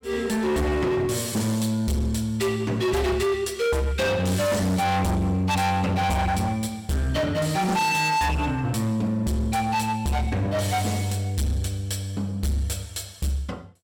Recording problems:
distortion; hard clipping, signal-to-distortion ratio 7 dB

